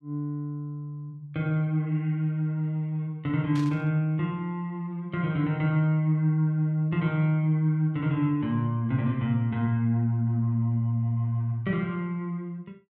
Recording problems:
burst of static; at 3.5 s; peak -12 dB vs average level

